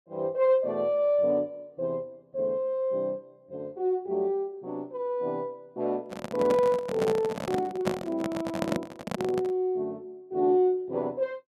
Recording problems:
handling noise; from 6 to 9.5 s; peak +4 dB vs average level

